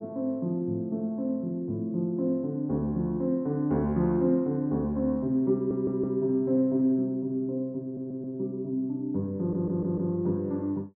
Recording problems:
audio stuttering; at 5.5 s, at 8 s and at 9.5 s

